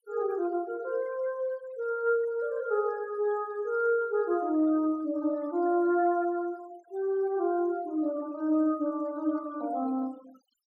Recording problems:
denoising artefacts; signal-to-artefact ratio 25 dB

